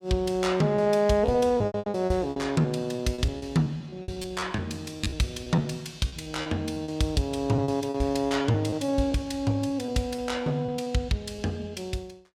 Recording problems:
lost packets; 13% of the sound replaced, filled with repeated pitch periods

